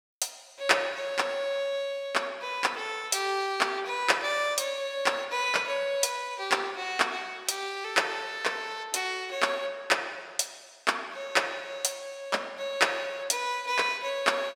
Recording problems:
none

